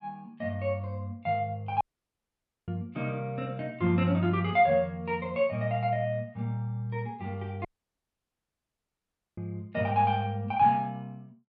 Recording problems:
audio cutting out; at 2 s for 1 s and at 7.5 s for 1.5 s

